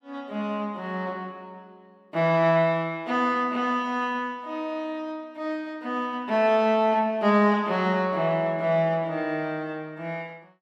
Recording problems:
none

